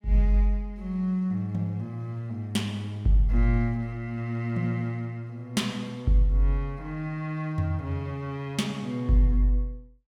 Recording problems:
none

